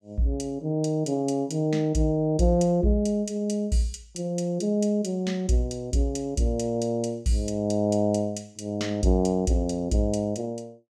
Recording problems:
none

